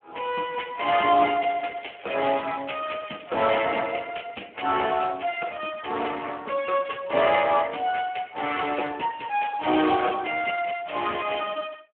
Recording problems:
phone line; 240 Hz to 3.3 kHz, Speex
crackle; from 0.5 to 3.5 s; loose cable, SNR 21 dB

